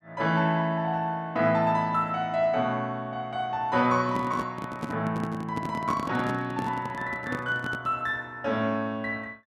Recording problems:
handling noise; from 4 to 8 s; peak -1 dB vs average level

